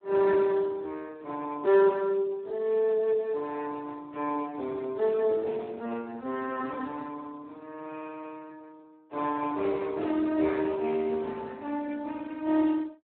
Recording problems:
telephone audio; 260 Hz to 2.1 kHz, Speex

